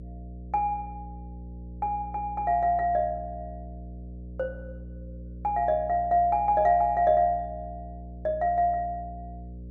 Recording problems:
electrical hum; 60 Hz, harmonics up to 540 Hz, SNR 15 dB

